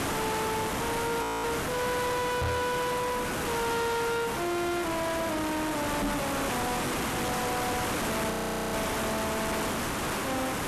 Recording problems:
distortion; soft clipping, signal-to-distortion ratio 6 dB
background hiss; slope -5 dB per octave, SNR 0 dB
frozen audio; at 1 s and at 8.5 s
microphone thump; at 2.5 s and at 6 s; peak +6 dB vs average level

